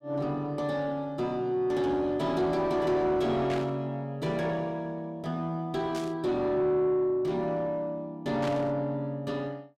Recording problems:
distortion; soft clipping, signal-to-distortion ratio 10 dB
static burst; at 3.5 s, at 6 s and at 8.5 s; peak -7 dB vs average level

